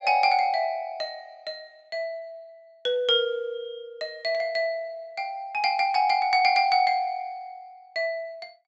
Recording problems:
treble missing; nothing above 7.8 kHz

